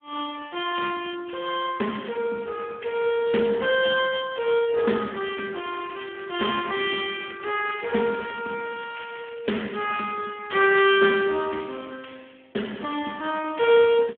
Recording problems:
telephone audio; 260 Hz to 3.3 kHz, Speex
crackling; from 5.5 to 10 s; loose cable, SNR 22 dB

